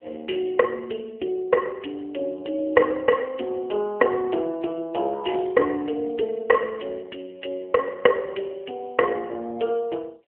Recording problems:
telephone audio; 300 Hz to 3.2 kHz, AMR-NB

